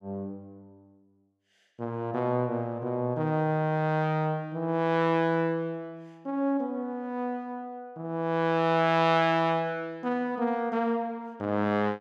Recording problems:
none

